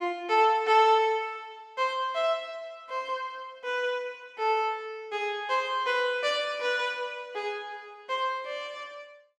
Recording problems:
none

